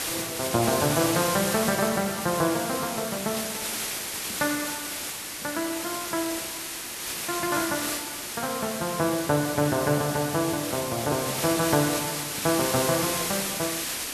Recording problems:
hiss; slope 0 dB per octave, SNR 2 dB

